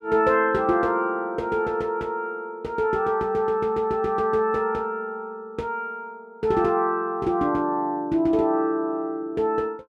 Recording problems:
none

